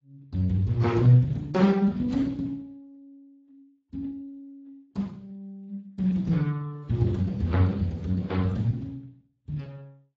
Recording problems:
codec artefacts; Speex, then AAC, log-spectral distance 2 dB, nothing above 16 kHz

